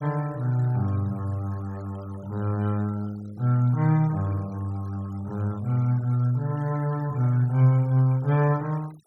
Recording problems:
noise reduction artefacts; signal-to-artefact ratio 25 dB

